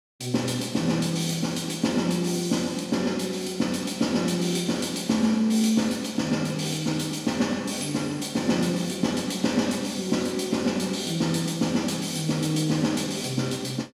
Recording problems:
none

